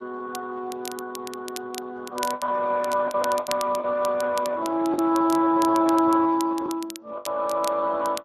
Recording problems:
lossy compression; Speex, log-spectral distance 3 dB
crackling; vinyl, SNR 15 dB
packet loss; 5% of the sound replaced, filled with the last packet

